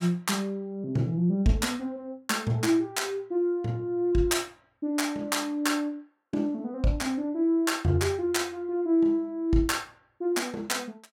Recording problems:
none

